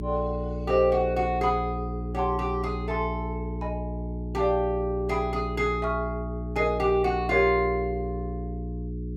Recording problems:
electrical hum; 60 Hz, harmonics up to 420 Hz, SNR 6 dB

